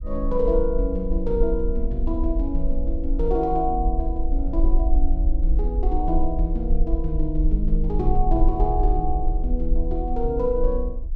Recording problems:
low-frequency rumble; below 46 Hz, strongest tone 20 Hz, SNR 0 dB

